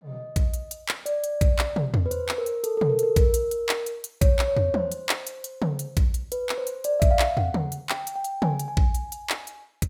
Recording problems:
none

